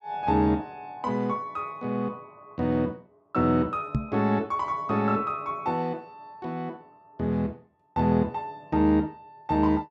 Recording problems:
microphone bump; at 4 s; peak +4 dB vs average level

